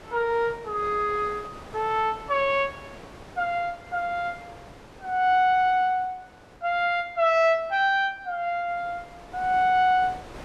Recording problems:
wind on the microphone; below 1.4 kHz, SNR 21 dB

